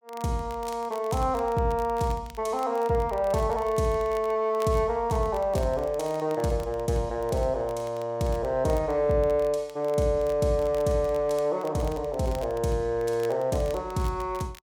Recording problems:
crackle; vinyl, SNR 24 dB

